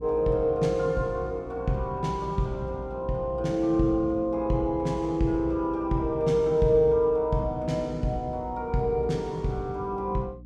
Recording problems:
hum; 60 Hz, harmonics up to 300 Hz, SNR 19 dB

